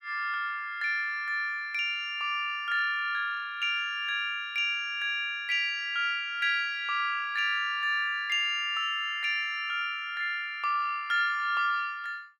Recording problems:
none

